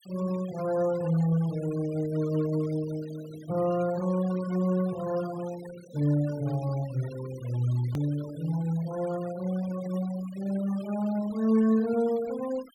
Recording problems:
denoising artefacts; signal-to-artefact ratio 19 dB
click at an edit; at 8 s

